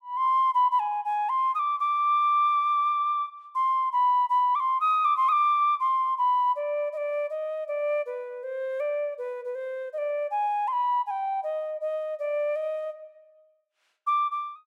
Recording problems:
none

